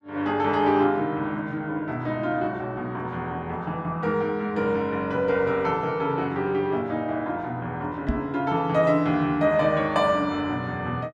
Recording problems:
microphone thump; at 8 s; peak +3 dB vs average level

